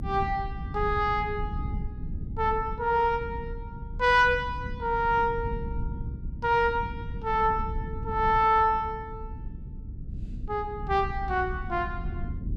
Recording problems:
rumble; below 120 Hz, SNR 10 dB

